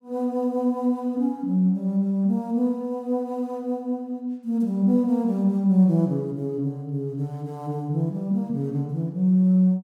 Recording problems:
none

